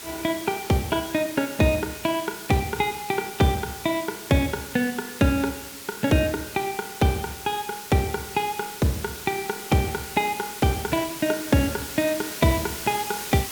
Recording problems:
background hiss; slope 0 dB per octave, SNR 10 dB

